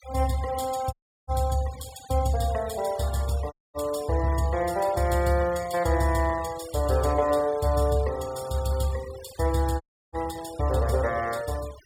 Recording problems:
denoising artefacts; signal-to-artefact ratio 18 dB
audio cutting out; at 1 s, at 3.5 s and at 10 s

